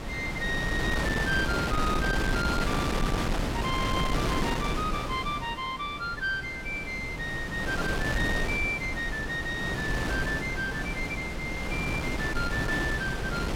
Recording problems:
wind noise; below 920 Hz, SNR 0 dB

